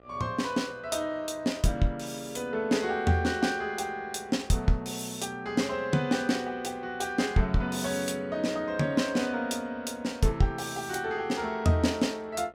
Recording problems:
hum; 60 Hz, harmonics up to 2.6 kHz, SNR 29 dB

